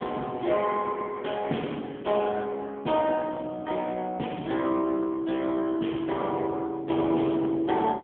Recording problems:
telephone audio; 170 Hz to 3.5 kHz, AMR-NB

